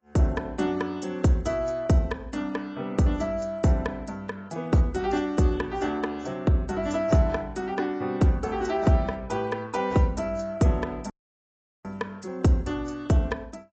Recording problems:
lossy compression; AAC, log-spectral distance 3 dB, nothing above 7.3 kHz
dropout; at 11 s for 1 s

